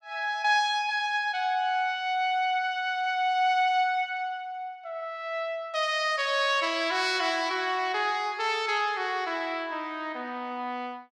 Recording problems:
none

